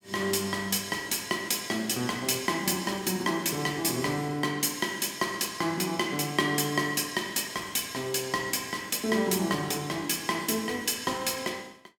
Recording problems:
none

